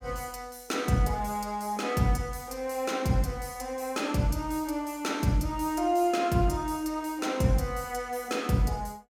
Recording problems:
none

